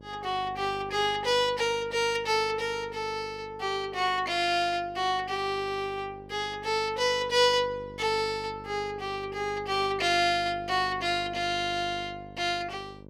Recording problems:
electrical hum; 50 Hz, harmonics up to 1.1 kHz, SNR 19 dB

